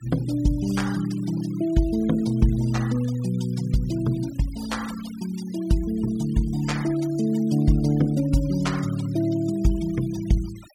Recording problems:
noise reduction artefacts; signal-to-artefact ratio 19 dB

